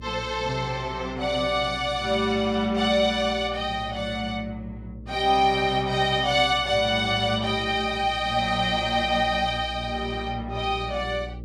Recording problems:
hum; 60 Hz, harmonics up to 600 Hz, SNR 16 dB

